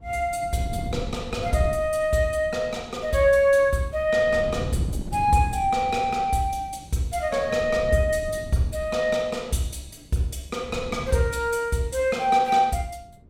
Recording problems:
wind on the microphone; below 190 Hz, SNR 14 dB

